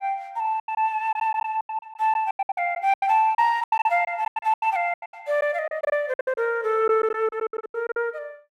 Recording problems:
lost packets; 20% of the sound replaced, filled with silence

